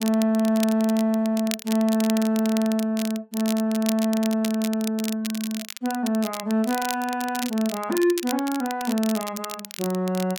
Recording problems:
crackle; vinyl, SNR 11 dB

